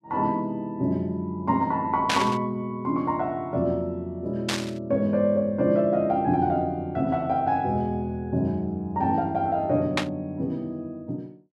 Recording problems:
static burst; at 2 s, at 4.5 s and at 10 s; peak +5 dB vs average level

